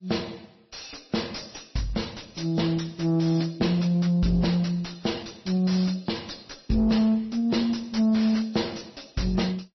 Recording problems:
lossy codec; MP3, then MP3, log-spectral distance 9 dB, nothing above 5.8 kHz
distorted audio; soft clipping, signal-to-distortion ratio 10 dB

